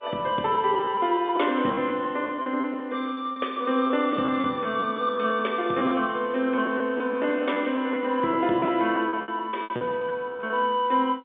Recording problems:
telephone audio; 170 Hz to 3.6 kHz, G.711
lost packets; 12% of the sound replaced, filled with repeated pitch periods

